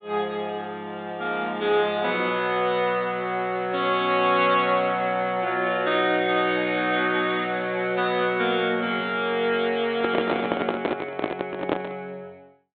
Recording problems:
treble cut off; nothing above 4 kHz
microphone handling noise; from 10 to 12 s; peak +4 dB vs average level

